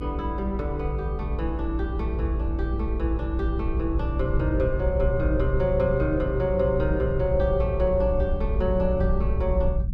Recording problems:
rumble; below 74 Hz, strongest tone 56 Hz, SNR 2 dB

